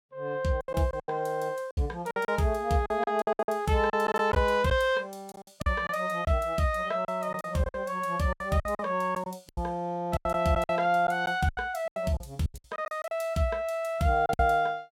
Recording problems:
lost packets; 13% of the sound replaced, filled with silence

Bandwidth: 16.5 kHz